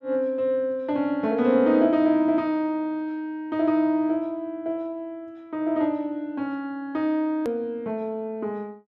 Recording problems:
click at an edit; at 7.5 s

